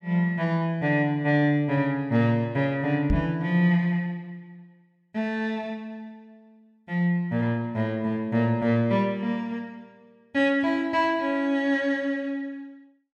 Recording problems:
microphone thump; at 3 s; peak +3 dB vs average level

